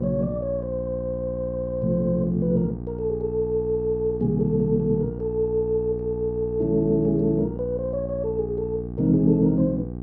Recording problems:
electrical hum; 60 Hz, harmonics up to 840 Hz, SNR 9 dB

